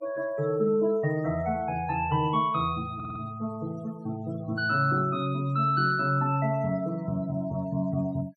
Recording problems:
noise reduction artefacts; signal-to-artefact ratio 21 dB
audio stuttering; at 3 s

